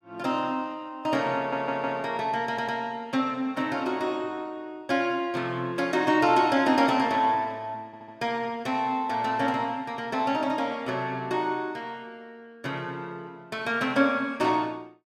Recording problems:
stutter; at 1.5 s, at 2.5 s and at 8 s

